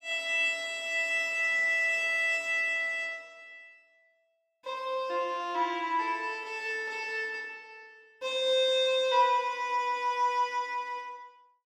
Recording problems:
none

